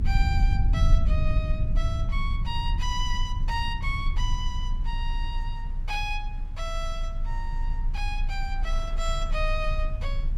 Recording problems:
rumble; below 62 Hz, strongest tone 28 Hz, SNR -5 dB
wind on the microphone; below 1.2 kHz, SNR 21 dB

